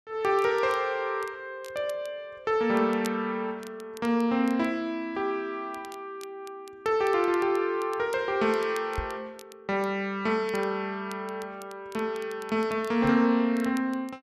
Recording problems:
crackle; vinyl, SNR 24 dB
microphone bump; at 9 s and at 13 s; peak -2 dB vs average level

